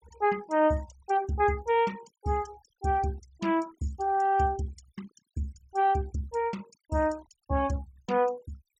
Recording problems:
noise reduction artefacts; signal-to-artefact ratio 22 dB

